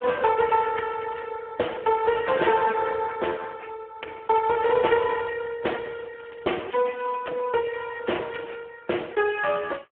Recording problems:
phone line; 300 Hz to 2.8 kHz, Speex
crackle; at 1 s and from 6 to 7 s; loose cable, SNR 28 dB

